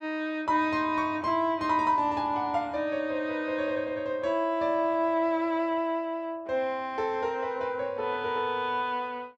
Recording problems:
none

